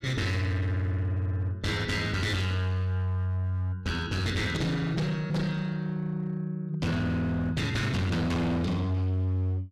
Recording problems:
distortion; hard clipping, uneven, signal-to-distortion ratio 8 dB

